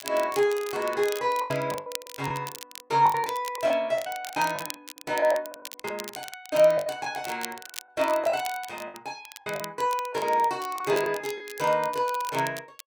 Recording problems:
crackling; vinyl, SNR 14 dB
lost packets; 11% of the sound replaced, filled with the last packet

